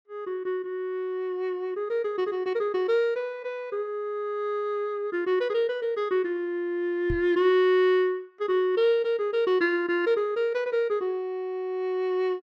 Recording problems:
microphone thump; at 7 s; peak -2 dB vs average level

